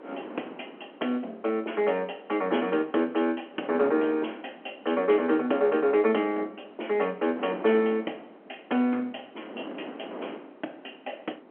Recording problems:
telephone audio; 220 Hz to 3.3 kHz, G.711
wind on the microphone; below 740 Hz, SNR 17 dB

